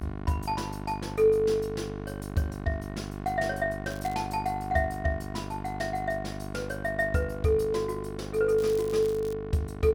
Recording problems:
electrical hum; 50 Hz, harmonics up to 2.2 kHz, SNR 8 dB
crackle; at 4 s and at 8.5 s; loose cable, SNR 20 dB

